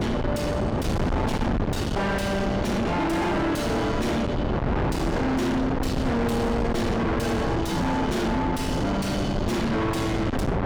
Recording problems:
distortion; soft clipping, signal-to-distortion ratio 5 dB
wind noise; below 640 Hz, SNR 1 dB

